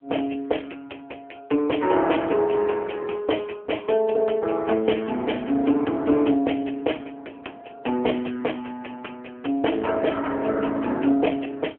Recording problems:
telephone audio; 240 Hz to 3.3 kHz, AMR-NB

